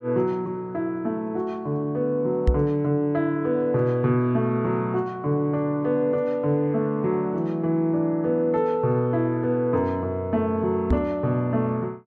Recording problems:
knock on the microphone; at 2.5 s and at 11 s; peak +7 dB vs average level

